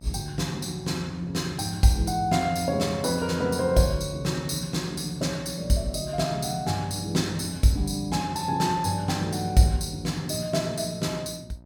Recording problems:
hum; 60 Hz, harmonics up to 960 Hz, SNR 22 dB

